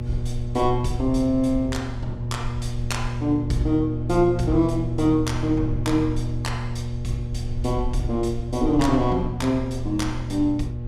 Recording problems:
mains hum; 60 Hz, harmonics up to 600 Hz, SNR 6 dB
rumble; below 76 Hz, SNR 10 dB

